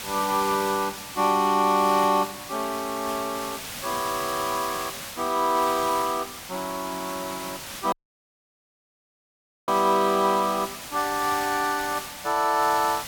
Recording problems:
hiss; slope 0 dB per octave, SNR 10 dB
audio cutting out; at 8 s for 2 s

